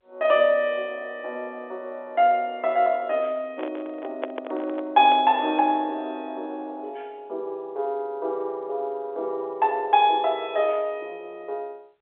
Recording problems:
telephone audio; 280 Hz to 3.6 kHz, G.711
microphone handling noise; from 3.5 to 5.5 s; peak -2 dB vs average level

